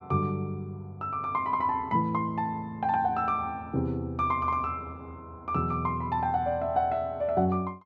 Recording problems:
none

